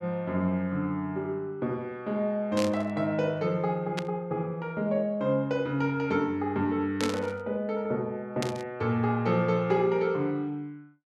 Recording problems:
burst of static; 4 times, first at 2.5 s; peak 0 dB vs average level

